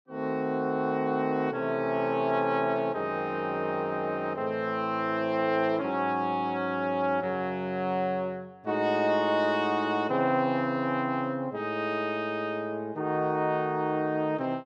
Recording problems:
none

